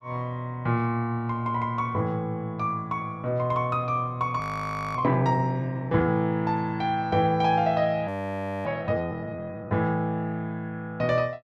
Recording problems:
frozen audio; at 4.5 s for 0.5 s and at 8 s for 0.5 s

